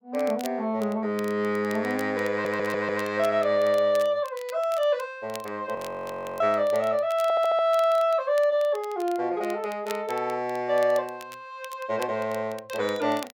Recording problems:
crackle; vinyl, SNR 21 dB
audio stuttering; at 2.5 s and at 7 s
audio freezing; at 6 s for 0.5 s

